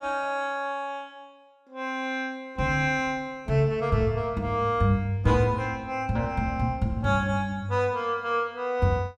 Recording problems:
none

